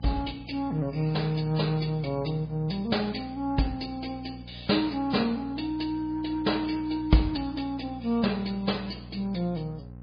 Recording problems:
lossy codec; MP3, log-spectral distance 5 dB, nothing above 4.8 kHz
electrical hum; 60 Hz, harmonics up to 840 Hz, SNR 15 dB

